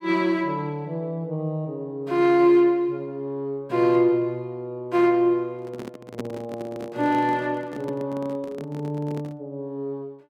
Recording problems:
handling noise; from 5.5 to 9.5 s; peak -3 dB vs average level

